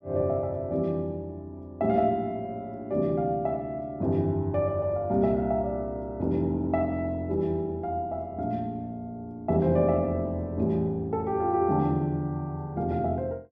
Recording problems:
none

